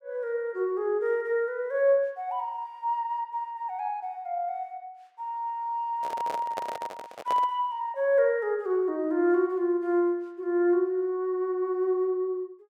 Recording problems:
handling noise; from 6 to 7.5 s; peak -3 dB vs average level

